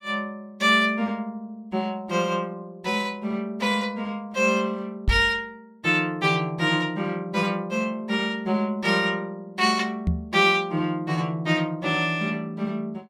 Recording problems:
microphone thump; at 5 s and at 10 s; peak +5 dB vs average level

